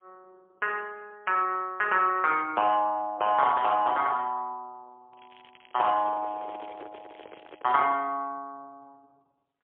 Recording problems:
telephone audio; 280 Hz to 3.3 kHz, AMR-NB, then MP3
crackling; from 5 to 7.5 s; loose cable, SNR 29 dB
microphone handling noise; from 6 to 8 s; peak -14 dB vs average level

